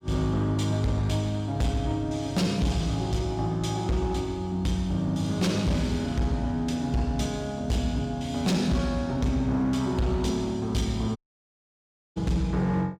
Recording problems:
distorted audio; hard clipping, signal-to-distortion ratio 11 dB
audio cutting out; at 11 s for 1 s

